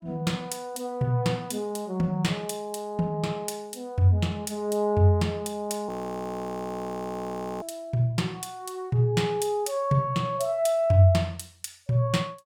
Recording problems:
frozen audio; at 6 s for 1.5 s

